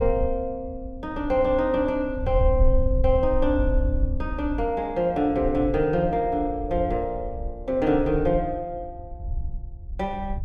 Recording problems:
wind on the microphone; below 66 Hz, SNR 6 dB

